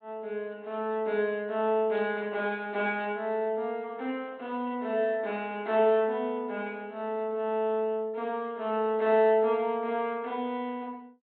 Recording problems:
treble missing; nothing above 4 kHz
static burst; at 2 s; peak -16 dB vs average level

